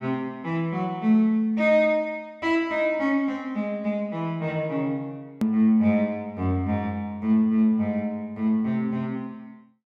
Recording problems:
edit click; at 5.5 s

